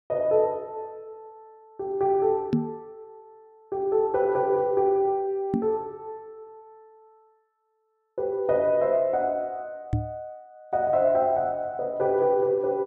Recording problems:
microphone thump; at 2.5 s, at 5.5 s and at 10 s; peak +5 dB vs average level

